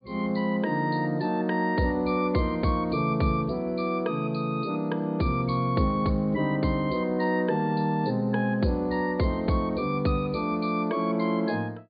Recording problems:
treble cut off; nothing above 4.7 kHz

